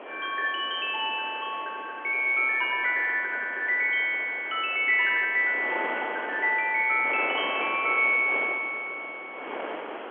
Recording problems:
phone line; 150 Hz to 3.8 kHz, G.711
background hiss; SNR 25 dB
wind on the microphone; below 1.5 kHz, SNR 13 dB

